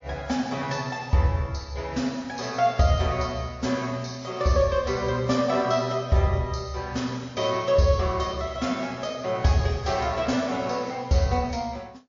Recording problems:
codec artefacts; MP3, log-spectral distance 4 dB, nothing above 6.5 kHz

